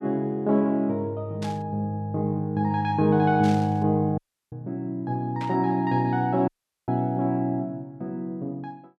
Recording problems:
static burst; at 1.5 s, at 3.5 s and at 5.5 s; peak -10 dB vs average level
dropout; at 4 s and at 6.5 s

